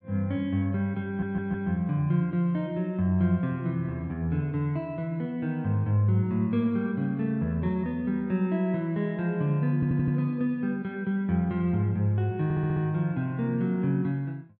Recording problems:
stutter; at 1 s, at 9.5 s and at 12 s

